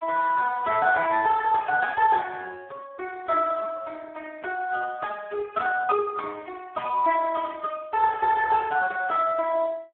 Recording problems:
phone line; 260 Hz to 3.3 kHz, Speex

